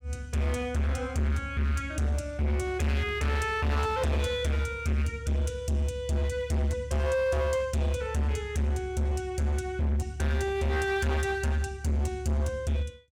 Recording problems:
distortion; hard clipping, signal-to-distortion ratio 7 dB

